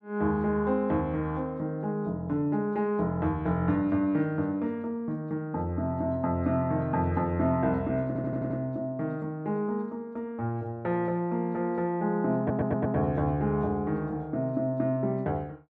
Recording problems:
stutter; at 8 s and at 12 s

